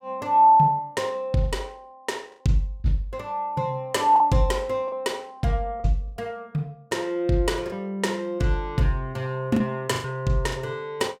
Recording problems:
packet loss; 5% of the sound replaced, filled with the last packet

